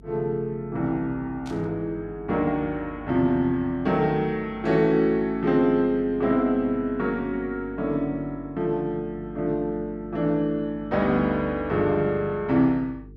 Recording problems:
hum; 50 Hz, harmonics up to 450 Hz, SNR 21 dB
static burst; at 1.5 s; peak -15 dB vs average level

